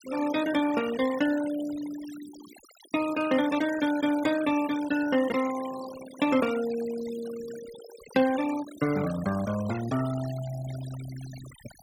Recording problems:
denoising artefacts; signal-to-artefact ratio 14 dB

